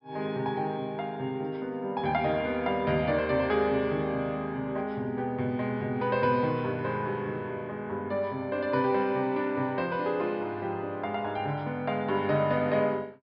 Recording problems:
low-pass filter; nothing above 5.2 kHz

